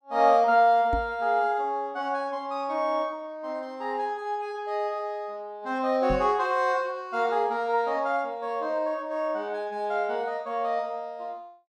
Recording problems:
knock on the microphone; at 1 s and at 6 s; peak -1 dB vs average level

